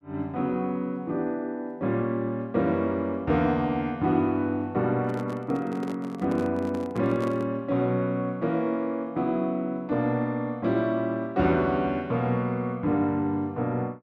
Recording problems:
handling noise; from 5 to 7.5 s; peak -6 dB vs average level

